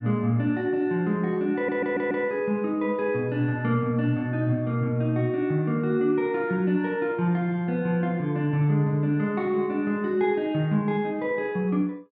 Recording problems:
audio stuttering; at 1.5 s

